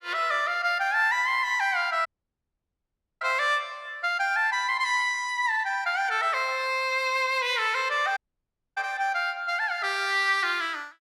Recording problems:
audio cutting out; at 2 s for 1 s and at 8 s for 0.5 s

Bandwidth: 14.5 kHz